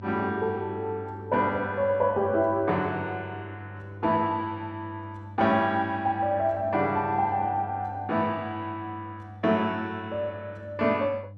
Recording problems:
hum; 50 Hz, harmonics up to 500 Hz, SNR 15 dB

